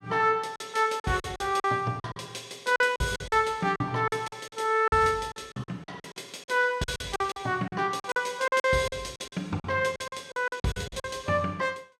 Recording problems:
lost packets; 15% of the sound replaced, filled with silence

